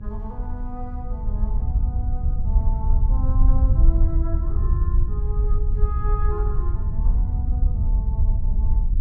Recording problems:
hum; 50 Hz, harmonics up to 600 Hz, SNR 8 dB
wind noise; below 66 Hz, SNR -14 dB

